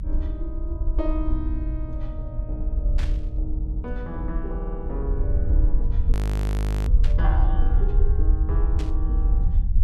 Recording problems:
rumble; below 62 Hz, SNR -10 dB
burst of static; at 3 s, at 7 s and at 9 s; peak 0 dB vs average level
audio stuttering; at 3.5 s and at 4.5 s
frozen audio; at 6 s for 1 s

